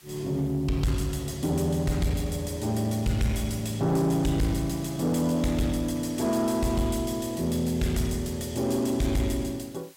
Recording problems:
distorted audio; soft clipping, signal-to-distortion ratio 11 dB
background hiss; slope +1 dB per octave, SNR 25 dB

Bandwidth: 16 kHz